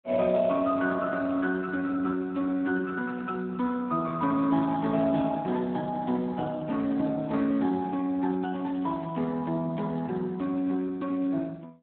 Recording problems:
phone line; 190 Hz to 2.3 kHz, Speex

